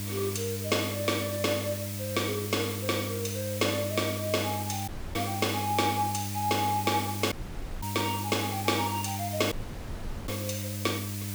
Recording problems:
hum; 50 Hz, harmonics up to 1 kHz, SNR 6 dB
background hiss; SNR 7 dB
audio cutting out; at 5 s, at 7.5 s for 0.5 s and at 9.5 s for 1 s

